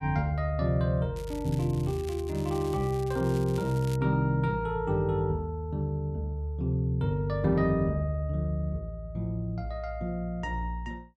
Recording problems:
crackle; from 1 to 4 s; loose cable, SNR 19 dB

